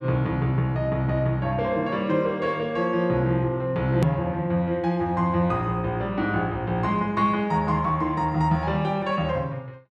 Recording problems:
hard cut with a click; at 4 s

